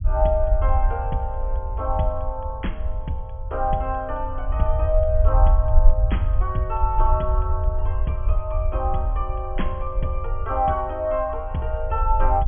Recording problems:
low-pass filter; nothing above 3.3 kHz
rumble; below 66 Hz, SNR -1 dB

